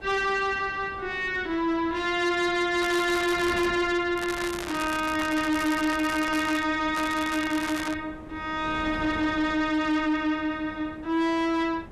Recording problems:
distorted audio; soft clipping, signal-to-distortion ratio 10 dB
wind noise; below 610 Hz, SNR 17 dB
crackle; at 3 s, from 4 to 6.5 s and from 7 to 8 s; loose cable, SNR 11 dB

